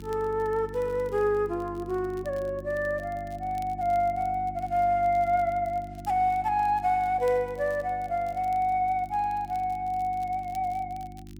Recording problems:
mains hum; 50 Hz, harmonics up to 350 Hz, SNR 16 dB
crackle; vinyl, SNR 30 dB

